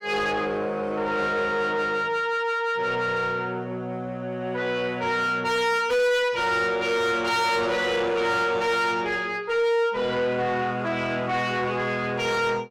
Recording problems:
distortion; soft clipping, signal-to-distortion ratio 7 dB

